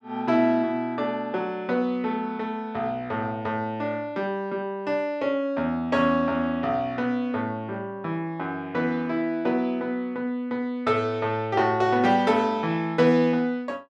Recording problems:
none

